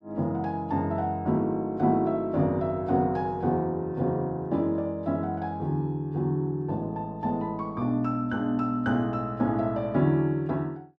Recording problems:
none

